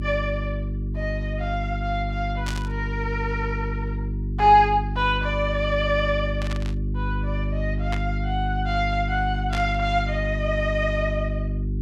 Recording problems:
electrical hum; 50 Hz, harmonics up to 400 Hz, SNR 3 dB
static burst; 4 times, first at 2.5 s; peak -4 dB vs average level

